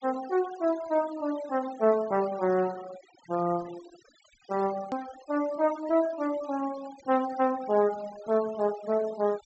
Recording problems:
low-pass filter; nothing above 7.8 kHz
denoising artefacts; signal-to-artefact ratio 19 dB
click at an edit; at 5 s

